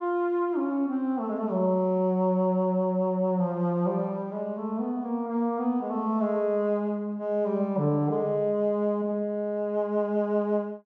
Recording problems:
none

